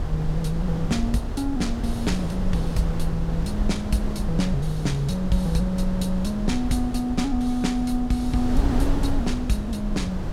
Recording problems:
wind noise; below 120 Hz, SNR 3 dB

